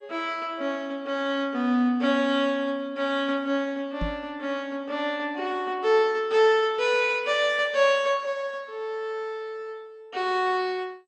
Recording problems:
lossy codec; MP2, log-spectral distance 2 dB, nothing above 7.8 kHz
microphone thump; at 4 s; peak -2 dB vs average level

